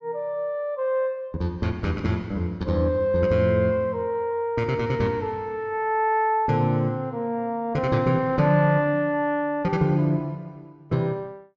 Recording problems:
treble cut off; nothing above 8 kHz

